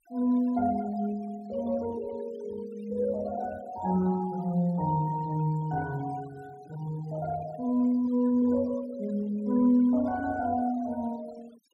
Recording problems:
noise reduction artefacts; signal-to-artefact ratio 23 dB

